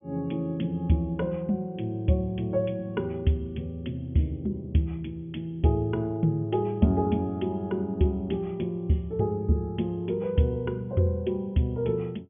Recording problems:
treble cut off; nothing above 3.4 kHz

